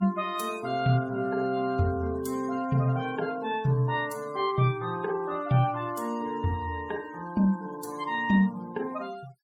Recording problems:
noise reduction artefacts; signal-to-artefact ratio 21 dB

